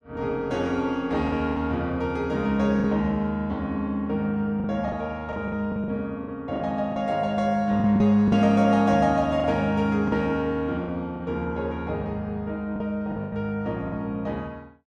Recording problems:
lost packets; 7% of the sound replaced, filled with the last packet

